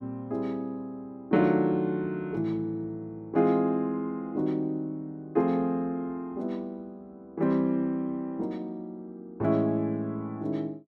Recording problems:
none

